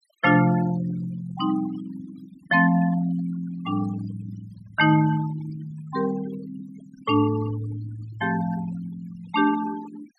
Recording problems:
noise reduction artefacts; signal-to-artefact ratio 17 dB

